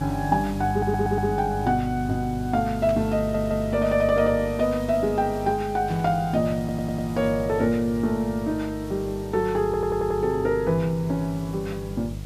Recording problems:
electrical hum; 50 Hz, harmonics up to 650 Hz, SNR 11 dB
background hiss; slope -2 dB per octave, SNR 22 dB
audio stuttering; 4 times, first at 0.5 s
static burst; at 3 s and at 6 s; peak -12 dB vs average level

